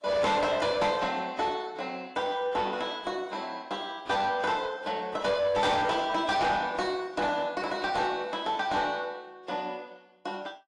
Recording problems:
lossy codec; AAC, log-spectral distance 2 dB
distorted audio; soft clipping, signal-to-distortion ratio 10 dB

